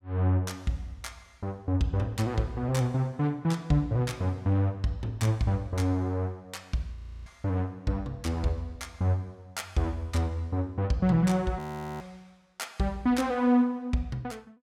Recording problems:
frozen audio; at 7 s and at 12 s

